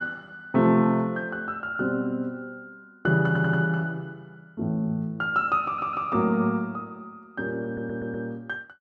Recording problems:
audio stuttering; at 3.5 s, at 5.5 s and at 7.5 s

